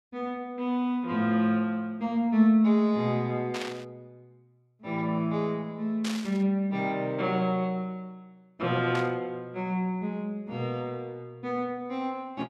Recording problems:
static burst; at 3.5 s, at 6 s and at 9 s; peak -3 dB vs average level

